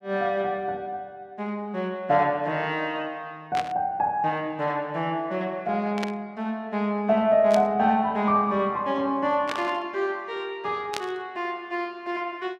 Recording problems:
burst of static; 5 times, first at 3.5 s; peak -1 dB vs average level

